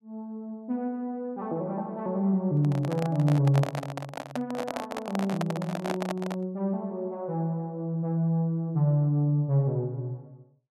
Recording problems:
handling noise; from 2.5 to 6.5 s; peak +1 dB vs average level

